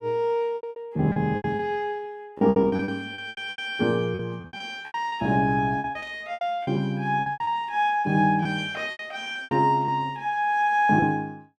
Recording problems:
packet loss; 16% of the sound replaced, filled with repeated pitch periods
burst of static; at 6 s; peak -22 dB vs average level

